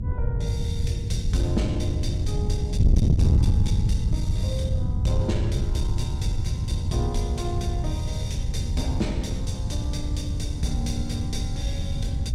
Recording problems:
distortion; soft clipping, signal-to-distortion ratio 10 dB
hum; 60 Hz, harmonics up to 360 Hz, SNR 19 dB
wind noise; below 120 Hz, SNR -6 dB

